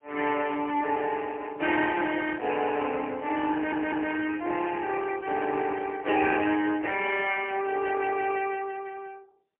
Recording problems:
phone line; 260 Hz to 3.1 kHz, AMR-NB, then MP3
audio stuttering; at 3.5 s

